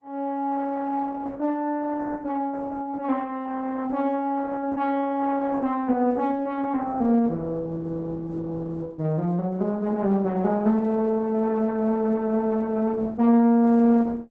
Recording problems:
codec artefacts; Opus, log-spectral distance 3 dB

